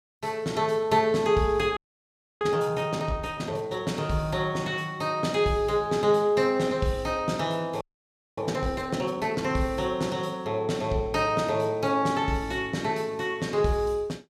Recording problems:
frozen audio; at 2 s for 0.5 s and at 8 s for 0.5 s

